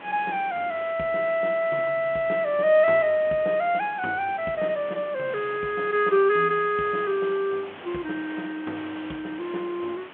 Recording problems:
phone line; 150 Hz to 3.9 kHz, G.726
background hiss; SNR 18 dB

